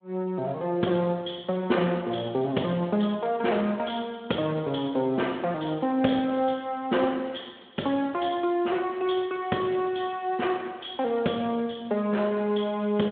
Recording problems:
telephone audio; 190 Hz to 3.4 kHz, Speex

